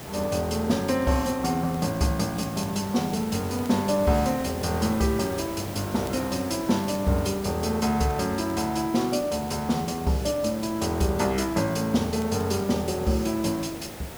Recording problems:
hiss; slope -5 dB per octave, SNR 12 dB
crackling; vinyl, SNR 29 dB

